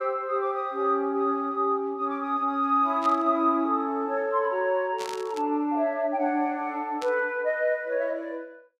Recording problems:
burst of static; at 3 s, at 5 s and at 7 s; peak -8 dB vs average level

